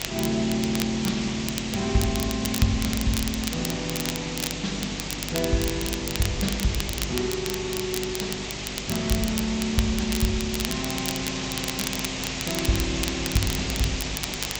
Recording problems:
codec artefacts; MP2, then G.722, log-spectral distance 14 dB
hum; 50 Hz, harmonics up to 500 Hz, SNR 12 dB
background hiss; SNR 3 dB
crackle; vinyl, SNR 5 dB

